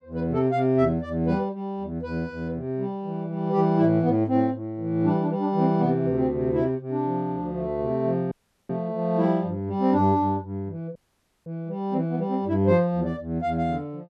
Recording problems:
audio cutting out; at 8.5 s and at 11 s for 0.5 s

